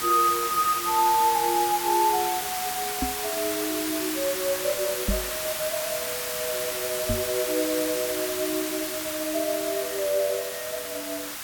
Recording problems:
hiss; slope 0 dB per octave, SNR 2 dB
knock on the microphone; at 3 s, at 5 s and at 7 s; peak +3 dB vs average level

